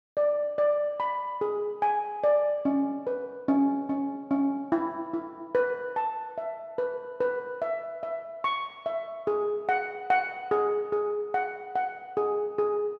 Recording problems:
none

